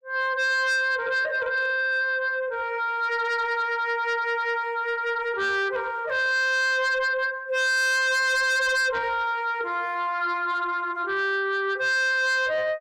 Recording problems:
distorted audio; soft clipping, signal-to-distortion ratio 8 dB

